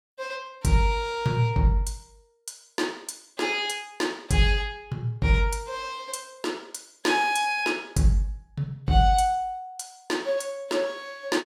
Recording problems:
none

